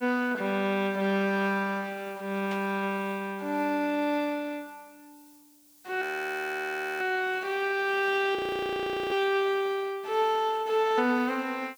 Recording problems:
background hiss; SNR 27 dB
burst of static; at 2.5 s; peak -9 dB vs average level
frozen audio; at 6 s for 1 s and at 8.5 s for 1 s

